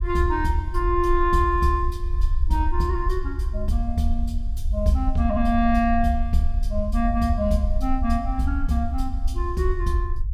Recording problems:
rumble; below 60 Hz, SNR 3 dB

